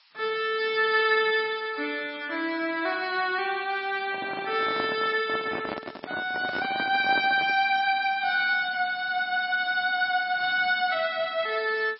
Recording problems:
codec artefacts; MP3, log-spectral distance 5 dB, nothing above 4.9 kHz
hiss; SNR 27 dB
handling noise; from 4 to 7.5 s; peak -3 dB vs average level

